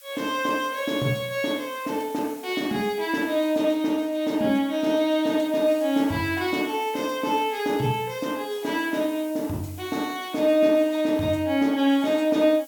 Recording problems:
background hiss; slope +4 dB per octave, SNR 21 dB

